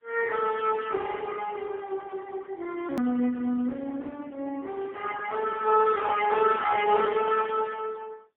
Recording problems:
telephone audio; 170 Hz to 3.3 kHz, AMR-NB, then MP3
hard cut with a click; at 3 s

